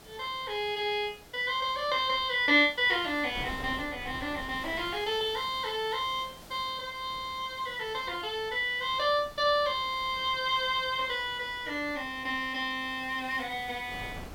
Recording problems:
hiss; slope -3 dB per octave, SNR 22 dB
wind noise; below 780 Hz, SNR 21 dB

